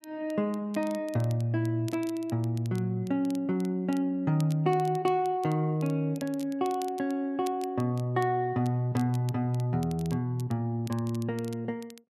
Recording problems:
crackling; vinyl, SNR 22 dB

